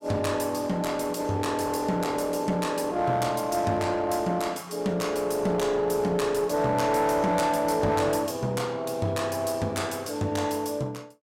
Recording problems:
distortion; hard clipping, uneven, signal-to-distortion ratio 11 dB

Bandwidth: 16 kHz